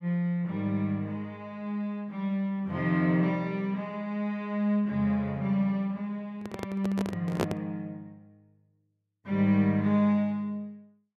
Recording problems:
microphone handling noise; from 6.5 to 7.5 s; peak +5 dB vs average level

